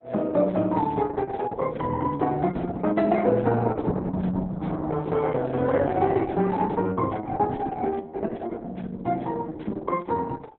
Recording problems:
lossy compression; Opus, log-spectral distance 3 dB, nothing above 4 kHz

